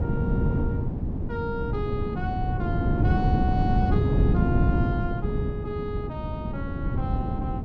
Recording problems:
wind on the microphone; below 210 Hz, SNR -7 dB

